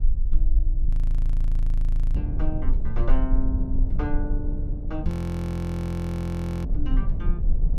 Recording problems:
low-frequency rumble; below 42 Hz, strongest tone 28 Hz, SNR -2 dB
wind noise; below 150 Hz, SNR 4 dB
audio freezing; at 1 s for 1.5 s and at 5 s for 1.5 s

